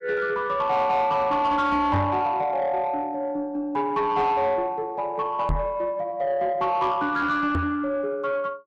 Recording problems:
distortion; soft clipping, signal-to-distortion ratio 11 dB
knock on the microphone; at 2 s, at 5.5 s and at 7.5 s; peak +5 dB vs average level

